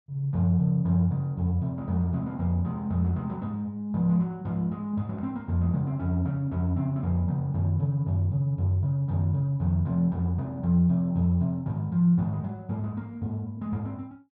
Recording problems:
none

